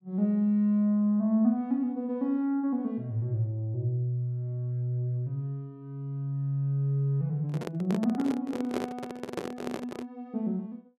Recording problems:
microphone handling noise; from 7.5 to 10 s; peak +1 dB vs average level

